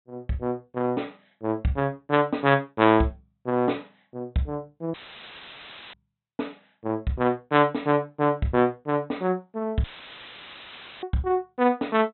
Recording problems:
low-pass filter; nothing above 4 kHz
dropout; at 5 s for 1 s and at 10 s for 1 s; filled with static

